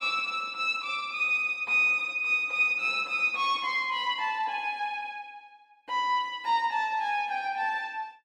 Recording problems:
none

